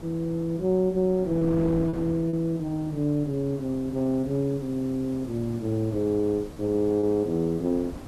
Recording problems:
background hiss; SNR 25 dB
wind noise; below 400 Hz, SNR 15 dB
packet loss; 3% of the sound replaced, filled with repeated pitch periods

